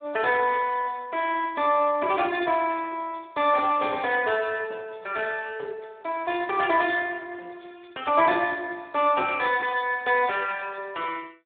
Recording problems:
telephone audio; 300 Hz to 3.4 kHz, Speex

